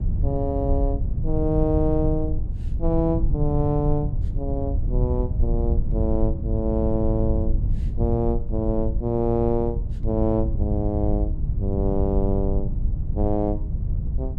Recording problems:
rumble; below 86 Hz, SNR 1 dB

